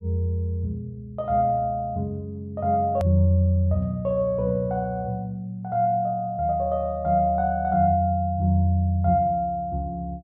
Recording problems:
click at an edit; at 3 s

